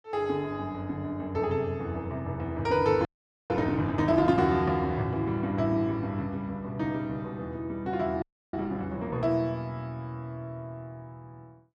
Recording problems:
frozen audio; at 3 s and at 8 s

